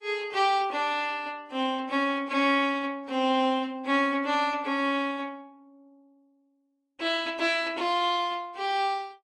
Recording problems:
codec artefacts; AAC, log-spectral distance 2 dB, nothing above 11 kHz

